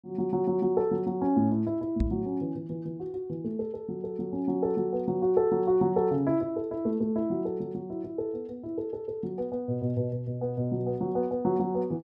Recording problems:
microphone thump; at 2 s; peak +6 dB vs average level

